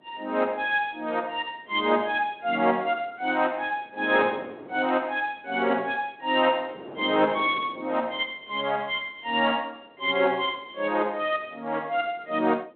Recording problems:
phone line; 320 Hz to 3.7 kHz, G.726
wind on the microphone; below 620 Hz, SNR 20 dB

